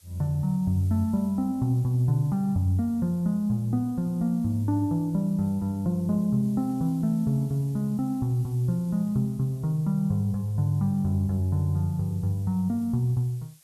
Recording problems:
hiss; slope +2 dB per octave, SNR 28 dB

